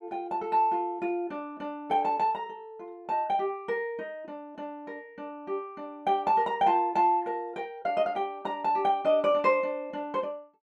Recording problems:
none

